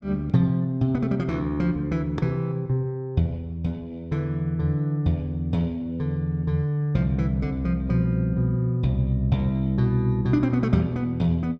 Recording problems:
none

